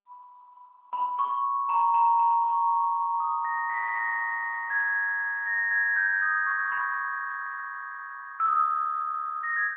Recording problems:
telephone audio; 260 Hz to 2.8 kHz, AMR-NB

